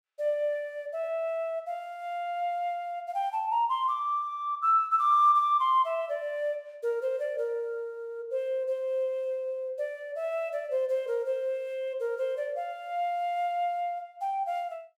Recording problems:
none

